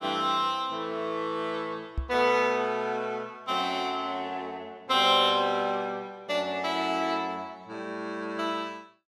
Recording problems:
microphone bump; at 2 s; peak 0 dB vs average level

